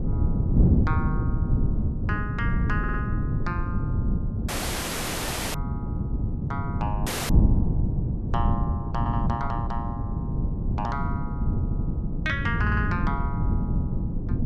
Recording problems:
wind on the microphone; below 180 Hz, SNR -6 dB
stutter; 4 times, first at 3 s
dropout; at 4.5 s for 1 s and at 7 s

